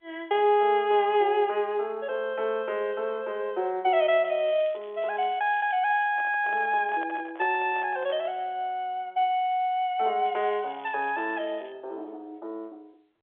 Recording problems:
telephone audio; 300 Hz to 3.5 kHz, G.711
crackle; from 4 to 6 s and from 10 to 12 s; loose cable, SNR 28 dB
microphone handling noise; from 6 to 8.5 s; peak -10 dB vs average level

